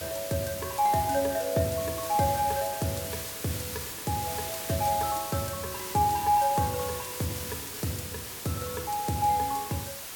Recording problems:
background hiss; slope 0 dB per octave, SNR 6 dB

